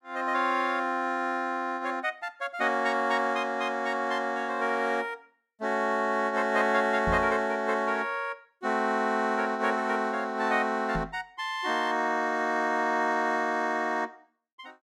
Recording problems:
microphone bump; at 7 s and at 11 s; peak -2 dB vs average level

